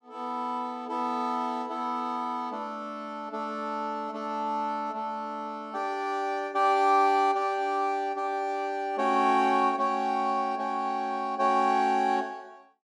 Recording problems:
none

